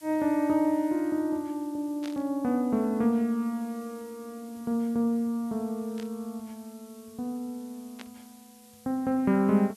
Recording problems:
background hiss; slope +1 dB per octave, SNR 26 dB
static burst; at 2 s, at 6 s and at 8 s; peak -10 dB vs average level

